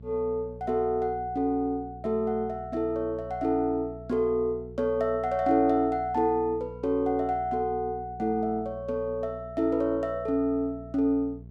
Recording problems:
hum; 60 Hz, harmonics up to 480 Hz, SNR 17 dB

